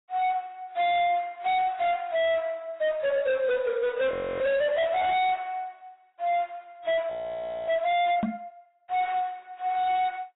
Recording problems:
lossy codec; AAC, log-spectral distance 2 dB, nothing above 3.8 kHz
distortion; hard clipping, signal-to-distortion ratio 7 dB
frozen audio; at 4 s and at 7 s for 0.5 s
microphone thump; at 8 s; peak +3 dB vs average level

